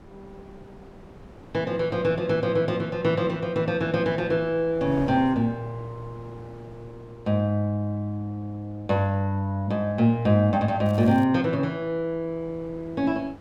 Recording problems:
wind on the microphone; below 570 Hz, SNR 22 dB
crackle; at 11 s; loose cable, SNR 28 dB

